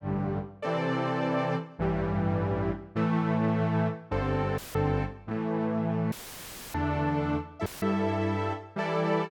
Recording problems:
audio cutting out; at 4.5 s, at 6 s for 0.5 s and at 7.5 s; filled with static

